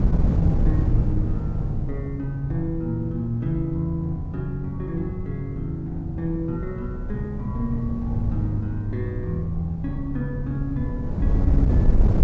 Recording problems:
low-pass filter; nothing above 8 kHz
wind noise; below 130 Hz, SNR 0 dB

